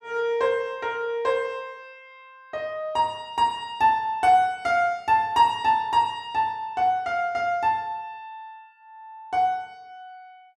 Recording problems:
none

